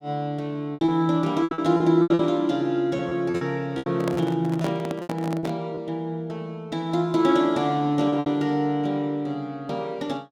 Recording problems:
packet loss; 9% of the sound replaced, filled with repeated pitch periods
handling noise; from 4 to 5.5 s; peak -2 dB vs average level

